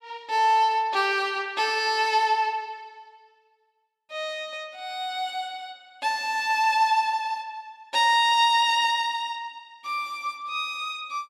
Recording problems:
none

